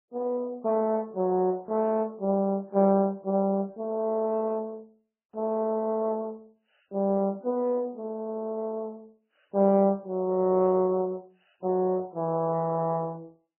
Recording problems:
lossy codec; MP2, then MP3, log-spectral distance 2 dB

